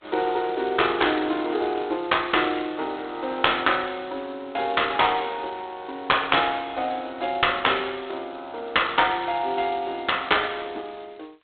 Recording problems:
phone line; 260 Hz to 3.8 kHz, G.726

